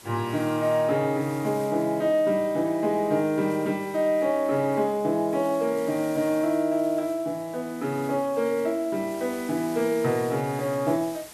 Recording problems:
hiss; slope -1 dB per octave, SNR 20 dB

